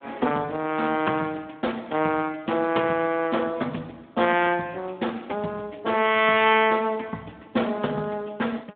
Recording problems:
telephone audio; 170 Hz to 3.5 kHz, Speex

